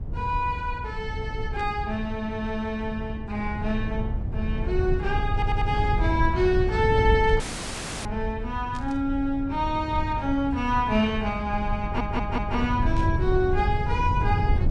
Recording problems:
lossy compression; Vorbis, log-spectral distance 2 dB
low-frequency rumble; below 110 Hz, SNR 3 dB
static burst; 4 times, first at 1.5 s; peak -14 dB vs average level
stutter; at 5.5 s and at 12 s
audio cutting out; at 7.5 s for 0.5 s

